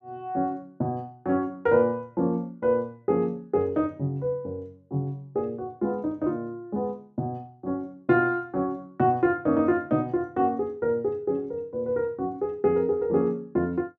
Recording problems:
none

